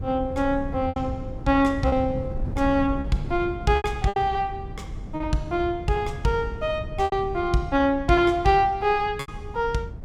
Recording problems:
wind on the microphone; below 140 Hz, SNR 11 dB
packet loss; 6% of the sound replaced, filled with repeated pitch periods

